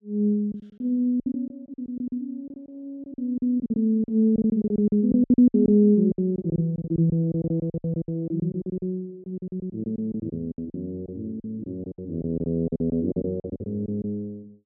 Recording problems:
lost packets; 17% of the sound replaced, filled with silence

